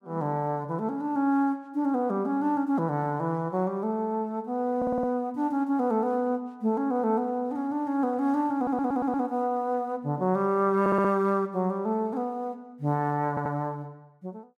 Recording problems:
stutter; 4 times, first at 5 s

